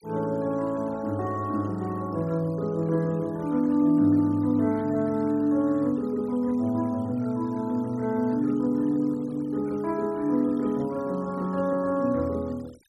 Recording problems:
denoising artefacts; signal-to-artefact ratio 27 dB

